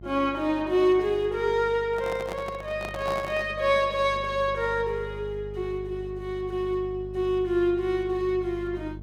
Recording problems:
hum; 50 Hz, harmonics up to 600 Hz, SNR 16 dB
microphone handling noise; from 2 to 3.5 s; peak -5 dB vs average level

